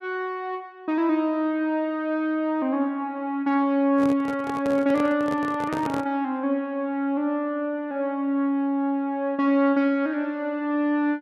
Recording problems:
microphone handling noise; from 4 to 6 s; peak -3 dB vs average level

